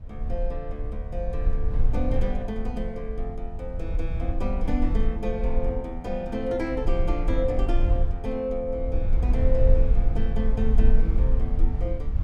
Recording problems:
low-frequency rumble; below 52 Hz, strongest tone 22 Hz, SNR -3 dB

